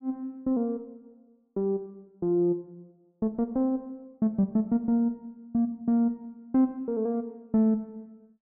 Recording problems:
none

